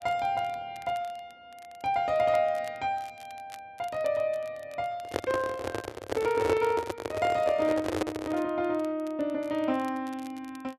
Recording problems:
crackle; vinyl, SNR 25 dB
microphone handling noise; from 5 to 8.5 s; peak +4 dB vs average level

